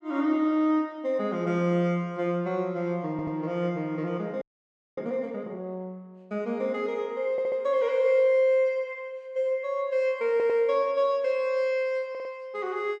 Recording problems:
stutter; 4 times, first at 3 s
frozen audio; at 4.5 s for 0.5 s

